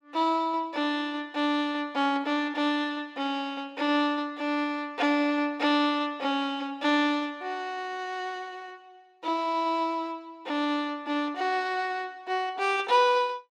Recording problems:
none

